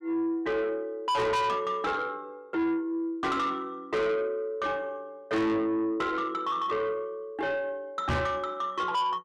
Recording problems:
distorted audio; soft clipping, signal-to-distortion ratio 6 dB
knock on the microphone; at 8 s; peak +4 dB vs average level

